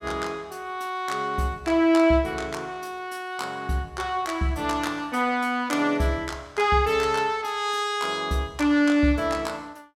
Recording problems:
none

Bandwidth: 16 kHz